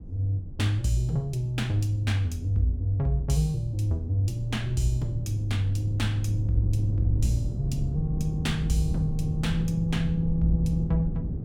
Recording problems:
rumble; below 150 Hz, SNR 7 dB

